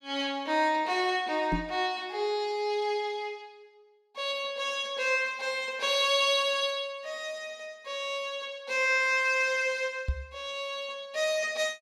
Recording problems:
microphone bump; at 1.5 s and at 10 s; peak +2 dB vs average level

